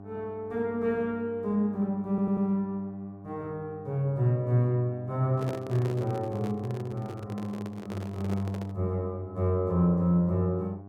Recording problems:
electrical hum; 50 Hz, harmonics up to 1.2 kHz, SNR 17 dB
stutter; at 2 s
handling noise; from 5.5 to 9 s; peak -4 dB vs average level

